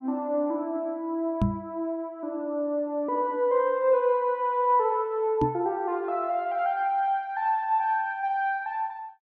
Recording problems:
knock on the microphone; at 1.5 s and at 5.5 s; peak +5 dB vs average level

